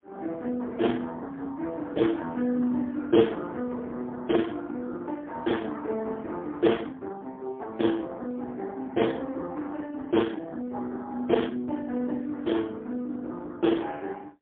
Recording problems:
telephone audio; 170 Hz to 3.3 kHz, AMR-NB, then MP3

